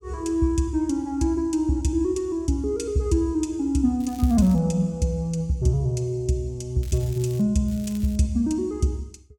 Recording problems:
crackling; at 4 s, at 7 s and at 7.5 s; loose cable, SNR 23 dB

